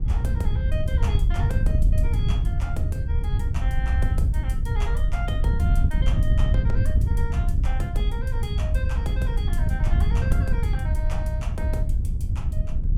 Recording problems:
wind noise; below 88 Hz, SNR -10 dB

